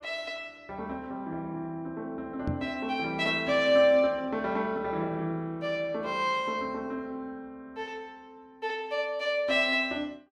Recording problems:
microphone bump; at 2.5 s; peak +1 dB vs average level

